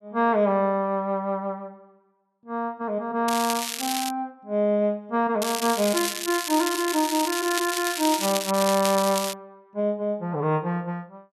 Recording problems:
crackle; at 3.5 s and from 5.5 to 9.5 s; loose cable, SNR 4 dB

